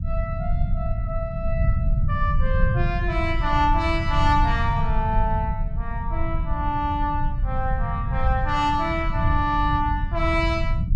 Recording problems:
low-frequency rumble; below 100 Hz, SNR 1 dB

